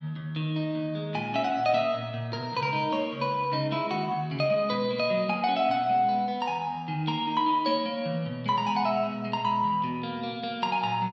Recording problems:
none

